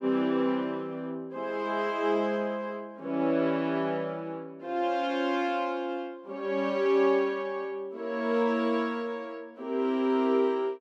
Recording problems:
none

